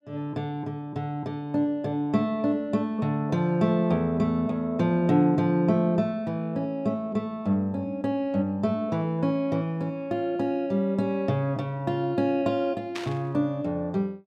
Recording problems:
static burst; at 13 s; peak -4 dB vs average level

